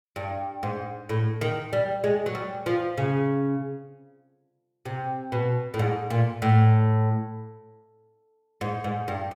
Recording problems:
none

